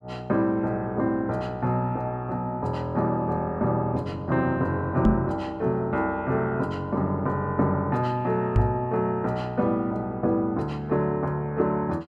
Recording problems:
microphone bump; at 5 s and at 8.5 s; peak +9 dB vs average level

